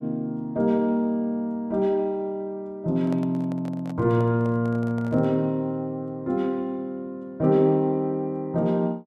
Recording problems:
handling noise; from 3 to 5.5 s; peak -10 dB vs average level

